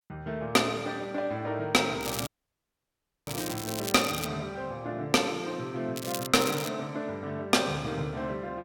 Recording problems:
distortion; hard clipping, uneven, signal-to-distortion ratio 10 dB
crackling; from 2 to 4.5 s, at 6 s and at 6.5 s; loose cable, SNR 8 dB
dropout; at 2.5 s for 1 s

